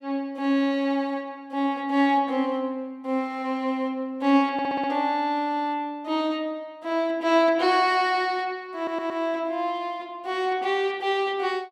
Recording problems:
audio stuttering; at 4.5 s and at 9 s

